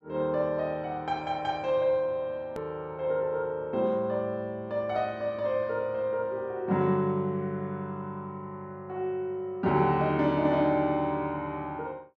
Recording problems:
click at an edit; at 2.5 s

